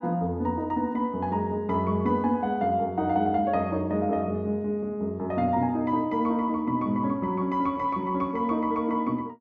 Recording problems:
none

